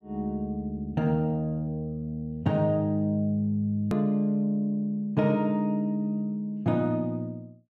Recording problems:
click at an edit; at 4 s

